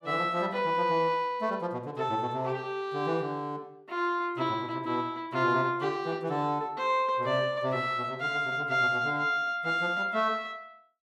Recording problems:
none

